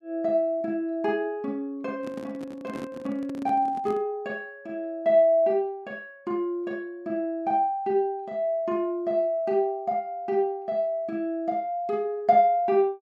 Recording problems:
handling noise; from 2 to 4 s; peak -8 dB vs average level

